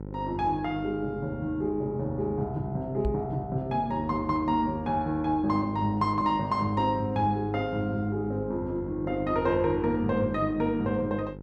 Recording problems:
electrical hum; 50 Hz, harmonics up to 1 kHz, SNR 12 dB
microphone bump; at 3 s; peak +1 dB vs average level

